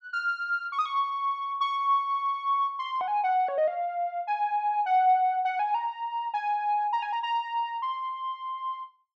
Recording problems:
none

